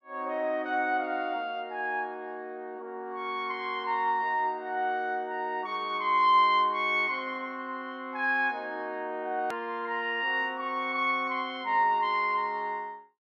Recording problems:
click at an edit; at 9.5 s

